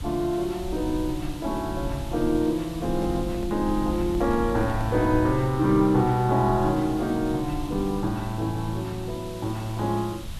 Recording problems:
background hiss; SNR 18 dB
rumble; below 98 Hz, SNR 12 dB
handling noise; from 3 to 5 s; peak -11 dB vs average level

